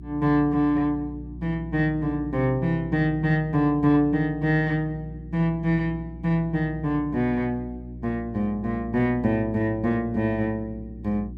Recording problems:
electrical hum; 60 Hz, harmonics up to 360 Hz, SNR 15 dB

